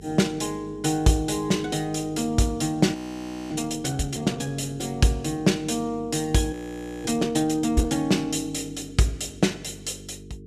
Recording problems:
hum; 50 Hz, harmonics up to 450 Hz, SNR 19 dB
frozen audio; at 3 s for 0.5 s and at 6.5 s for 0.5 s

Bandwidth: 14.5 kHz